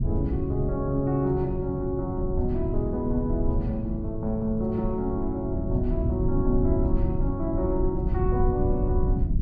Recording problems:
low-frequency rumble; below 110 Hz, SNR 2 dB

